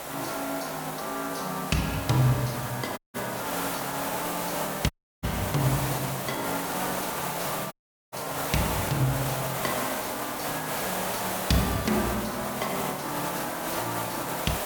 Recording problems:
background hiss; SNR 1 dB
crackling; from 1.5 to 2.5 s, at 4 s and from 5.5 to 7 s; loose cable, SNR 19 dB
dropout; at 3 s, at 5 s and at 7.5 s

